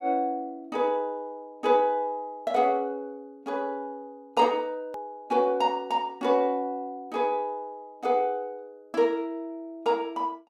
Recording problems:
hard cut with a click; at 5 s

